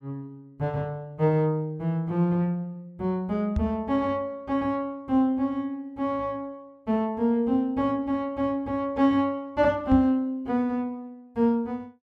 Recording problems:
knock on the microphone; at 3.5 s and at 10 s; peak +2 dB vs average level

